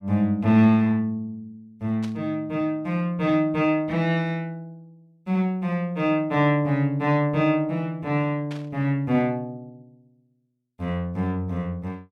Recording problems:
burst of static; at 2 s and at 8.5 s; peak -13 dB vs average level

